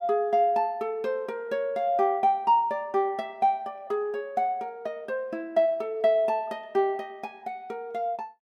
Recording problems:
none

